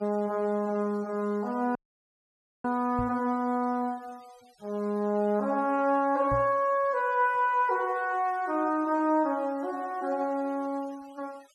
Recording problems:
noise reduction artefacts; signal-to-artefact ratio 28 dB
dropout; at 2 s for 1 s
microphone bump; at 3 s and at 6.5 s; peak -3 dB vs average level

